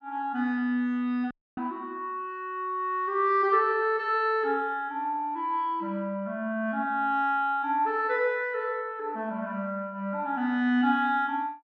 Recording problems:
dropout; at 1.5 s

